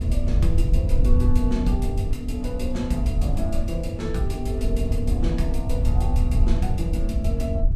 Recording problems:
wind noise; below 74 Hz, SNR -3 dB

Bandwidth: 14.5 kHz